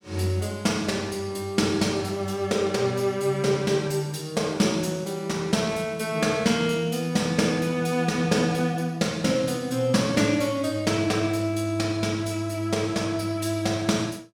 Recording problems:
none

